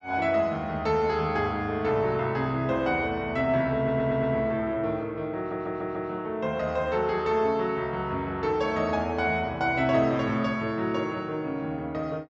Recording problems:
treble cut off; nothing above 8 kHz
stutter; at 4 s and at 5.5 s

